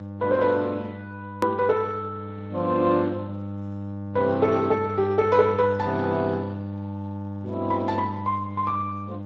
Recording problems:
lossy codec; Speex, log-spectral distance 2 dB, nothing above 13.1 kHz
hum; 50 Hz, harmonics up to 1.2 kHz, SNR 10 dB
hard cut with a click; at 1.5 s

